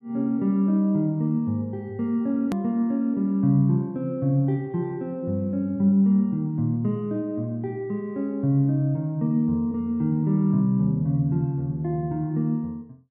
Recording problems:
hard cut with a click; at 2.5 s

